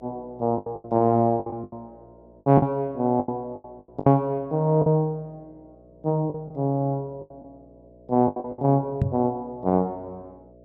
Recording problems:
electrical hum; 60 Hz, harmonics up to 660 Hz, SNR 28 dB
lost packets; 12% of the sound replaced, filled with the last packet
knock on the microphone; at 9 s; peak +5 dB vs average level

